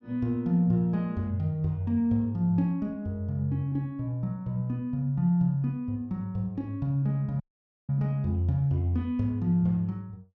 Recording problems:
dropout; at 7.5 s

